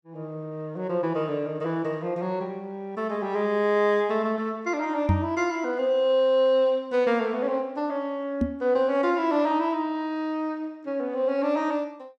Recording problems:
microphone bump; at 5 s and at 8.5 s; peak +6 dB vs average level

